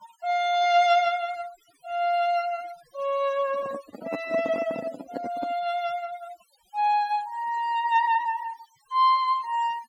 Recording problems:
denoising artefacts; signal-to-artefact ratio 19 dB
microphone handling noise; from 3.5 to 5.5 s; peak -3 dB vs average level

